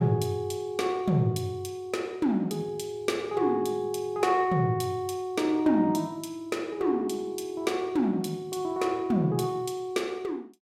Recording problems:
none

